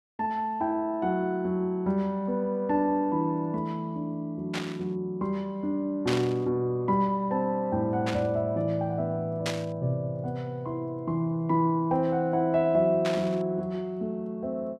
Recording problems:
burst of static; 5 times, first at 4.5 s; peak 0 dB vs average level

